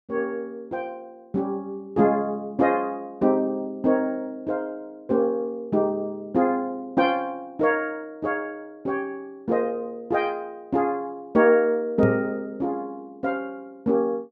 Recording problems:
knock on the microphone; at 12 s; peak +3 dB vs average level

